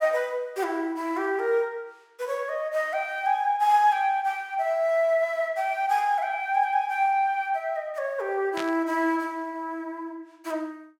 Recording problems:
static burst; at 8.5 s; peak -5 dB vs average level

